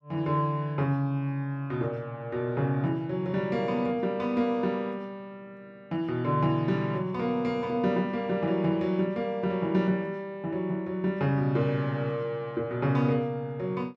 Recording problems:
none

